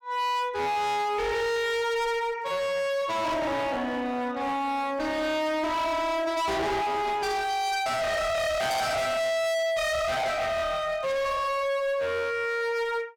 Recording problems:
distortion; hard clipping, uneven, signal-to-distortion ratio 5 dB

